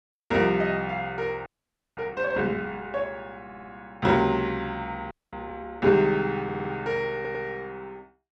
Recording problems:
audio freezing; at 1.5 s for 0.5 s and at 5 s
audio stuttering; at 3.5 s, at 6.5 s and at 7 s

